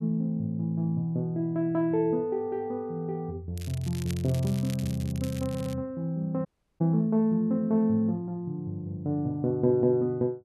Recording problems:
crackle; from 3.5 to 5.5 s; loose cable, SNR 17 dB
audio stuttering; at 5.5 s
audio cutting out; at 6.5 s

